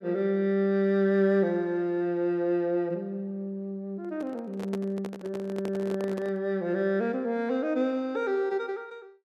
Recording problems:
handling noise; from 4 to 6.5 s; peak -4 dB vs average level

